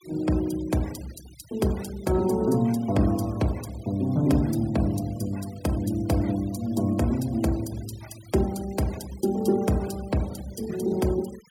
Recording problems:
noise reduction artefacts; signal-to-artefact ratio 21 dB

